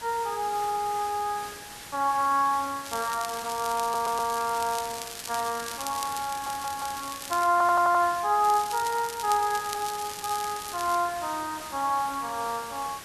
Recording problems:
background hiss; slope -1 dB per octave, SNR 12 dB
audio stuttering; 4 times, first at 0.5 s
crackle; from 3 to 7.5 s and from 8.5 to 11 s; loose cable, SNR 11 dB

